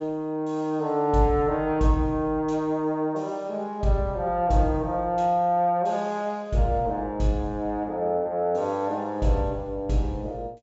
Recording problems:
treble cut off; nothing above 8 kHz

